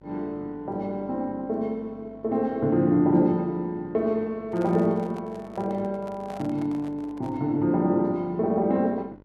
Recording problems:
hum; 50 Hz, harmonics up to 1.6 kHz, SNR 26 dB
handling noise; from 4.5 to 7.5 s; peak -11 dB vs average level

